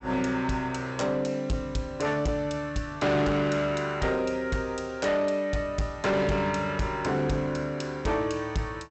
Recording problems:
low-pass filter; nothing above 8 kHz
distortion; hard clipping, signal-to-distortion ratio 10 dB

